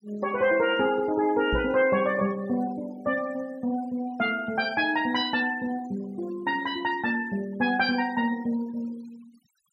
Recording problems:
noise reduction artefacts; signal-to-artefact ratio 22 dB
knock on the microphone; at 1.5 s; peak 0 dB vs average level

